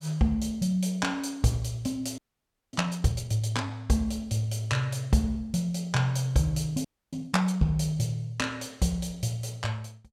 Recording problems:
frozen audio; at 2 s for 0.5 s and at 7 s

